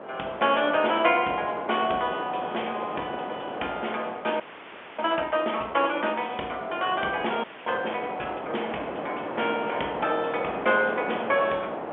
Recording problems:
phone line; 280 Hz to 3.4 kHz, G.711
wind noise; below 970 Hz, SNR 7 dB
frozen audio; at 4.5 s for 0.5 s and at 7.5 s

